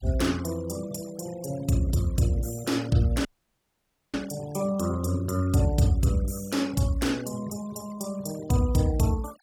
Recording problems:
denoising artefacts; signal-to-artefact ratio 20 dB
audio cutting out; at 3.5 s for 1 s

